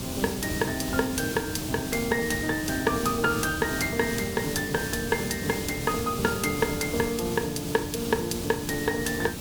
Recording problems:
hiss; SNR 5 dB

